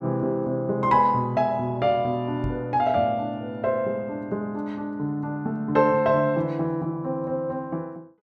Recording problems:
knock on the microphone; at 2.5 s; peak -3 dB vs average level

